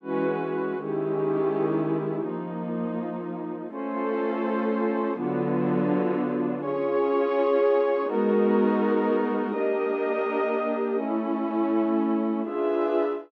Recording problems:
none

